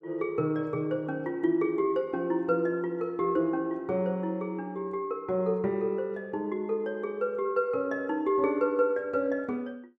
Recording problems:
none

